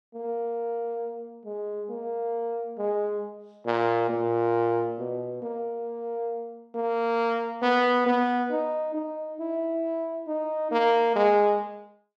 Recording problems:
none

